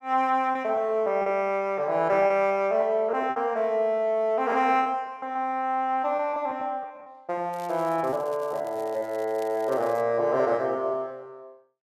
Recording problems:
lost packets; 8% of the sound replaced, filled with repeated pitch periods
crackling; from 7.5 to 10 s; loose cable, SNR 26 dB

